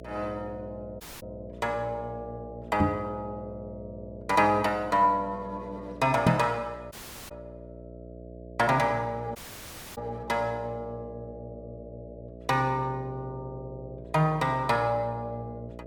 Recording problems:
hum; 60 Hz, harmonics up to 660 Hz, SNR 16 dB
audio cutting out; at 1 s, at 7 s and at 9.5 s for 0.5 s
knock on the microphone; at 3 s and at 6.5 s; peak +8 dB vs average level

